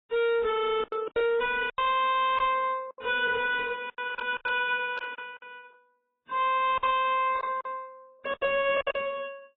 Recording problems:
lossy compression; AAC, then AAC, log-spectral distance 3 dB, nothing above 3.2 kHz
distorted audio; hard clipping, uneven, signal-to-distortion ratio 7 dB
packet loss; 11% of the sound replaced, filled with silence

